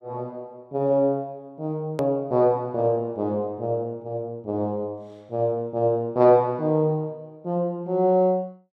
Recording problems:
hard cut with a click; at 2 s

